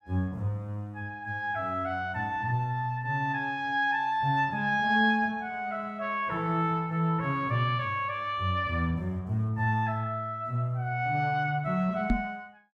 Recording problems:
knock on the microphone; at 12 s; peak +6 dB vs average level

